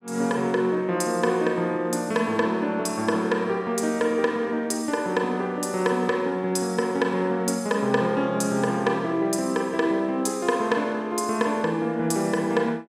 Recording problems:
none

